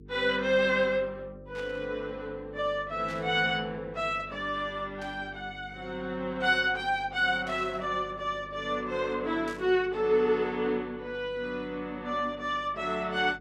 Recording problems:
hum; 50 Hz, harmonics up to 450 Hz, SNR 20 dB
static burst; 5 times, first at 1.5 s; peak -12 dB vs average level

